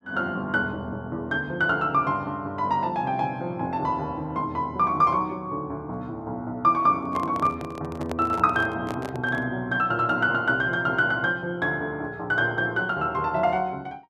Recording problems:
microphone handling noise; from 7 to 9.5 s; peak -5 dB vs average level

